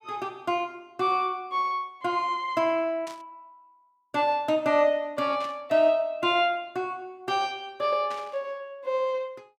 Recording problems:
static burst; at 3 s, at 5.5 s and at 8 s; peak -11 dB vs average level

